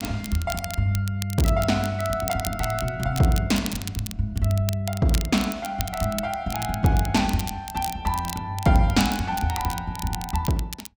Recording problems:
crackle; vinyl, SNR 11 dB

